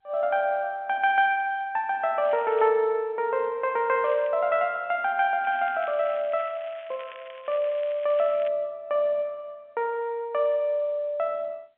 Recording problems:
phone line; 300 Hz to 3.5 kHz, G.711
crackling; at 2 s, at 4 s and from 5.5 to 8.5 s; loose cable, SNR 22 dB

